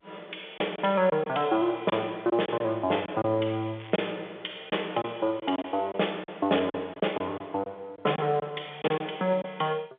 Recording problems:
telephone audio; 240 Hz to 3.6 kHz, G.711
packet loss; 7% of the sound replaced, filled with silence
crackle; at 4 s; loose cable, SNR 22 dB

